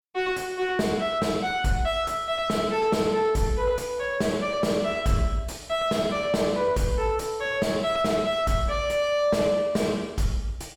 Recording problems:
distortion; soft clipping, signal-to-distortion ratio 6 dB

